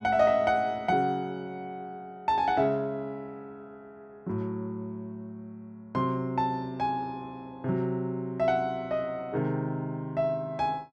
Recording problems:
none

